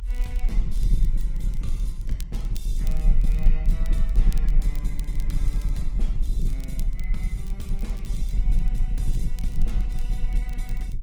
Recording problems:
lossy compression; Opus, log-spectral distance 2 dB, nothing above 19 kHz
low-frequency rumble; below 40 Hz, strongest tone 22 Hz, SNR -13 dB
crackle; vinyl, SNR 10 dB

